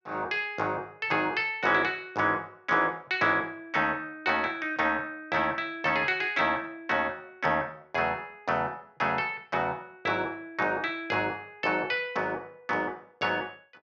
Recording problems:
none

